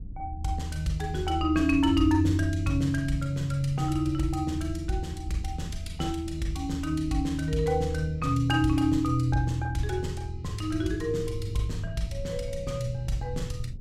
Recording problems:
low-frequency rumble; below 98 Hz, SNR 13 dB

